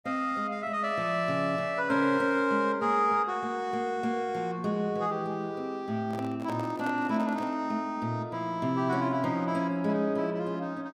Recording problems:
microphone handling noise; from 6 to 7.5 s; peak -6 dB vs average level

